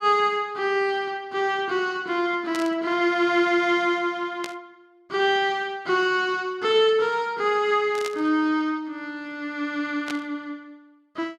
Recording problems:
burst of static; 4 times, first at 2.5 s; peak -5 dB vs average level

